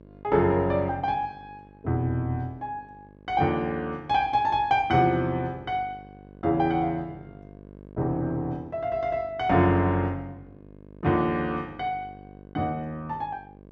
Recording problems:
mains hum; 50 Hz, harmonics up to 1.1 kHz, SNR 22 dB

